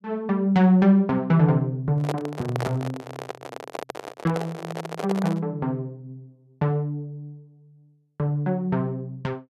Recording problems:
handling noise; from 2 to 5.5 s; peak -2 dB vs average level

